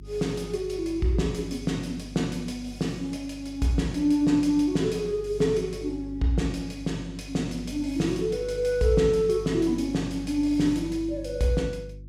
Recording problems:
hum; 50 Hz, harmonics up to 350 Hz, SNR 15 dB

